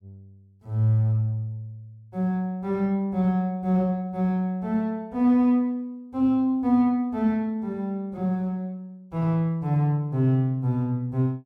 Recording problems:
none

